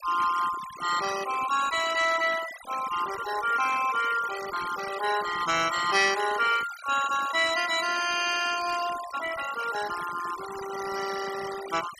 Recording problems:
noise reduction artefacts; signal-to-artefact ratio 11 dB

